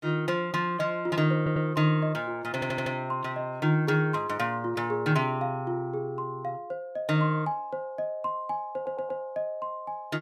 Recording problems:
stutter; at 1.5 s, at 2.5 s and at 8.5 s

